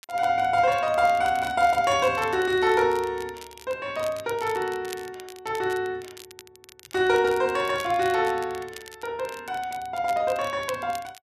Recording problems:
crackling; vinyl, SNR 20 dB

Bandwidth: 13.5 kHz